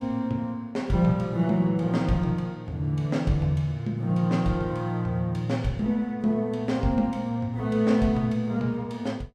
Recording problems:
none

